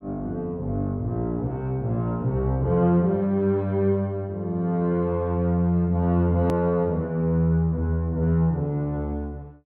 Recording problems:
edit click; at 6.5 s

